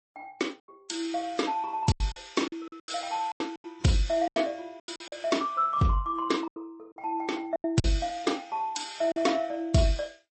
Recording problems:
lossy codec; AAC, then MP3, log-spectral distance 3 dB, nothing above 8.2 kHz
lost packets; 10% of the sound replaced, filled with silence

